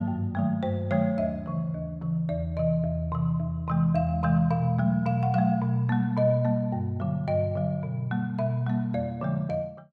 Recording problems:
none

